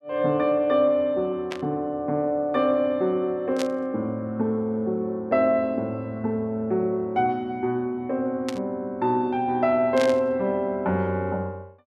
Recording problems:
burst of static; 4 times, first at 1.5 s; peak -4 dB vs average level

